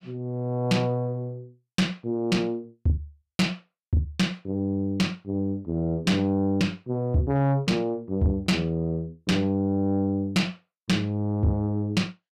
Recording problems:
distorted audio; soft clipping, signal-to-distortion ratio 11 dB

